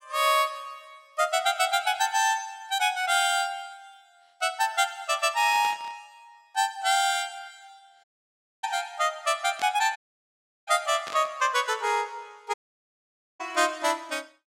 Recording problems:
burst of static; at 5.5 s, at 9.5 s and at 11 s; peak -7 dB vs average level
audio cutting out; at 8 s for 0.5 s, at 10 s for 0.5 s and at 13 s for 1 s

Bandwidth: 16.5 kHz